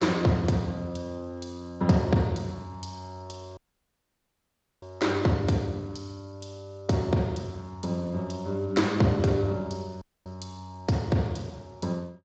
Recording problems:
lossy compression; Speex, log-spectral distance 4 dB, nothing above 7.3 kHz
audio cutting out; at 3.5 s for 1.5 s and at 10 s

